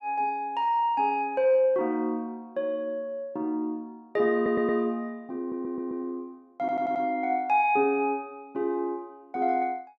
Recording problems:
audio stuttering; at 4.5 s, at 5.5 s and at 6.5 s

